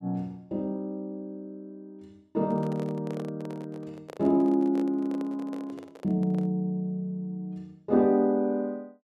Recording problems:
handling noise; from 2.5 to 6.5 s; peak -9 dB vs average level

